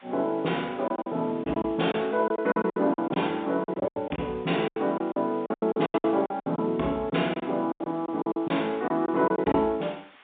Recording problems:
telephone audio; 260 Hz to 3.6 kHz, G.711
hiss; SNR 27 dB
packet loss; 16% of the sound replaced, filled with silence

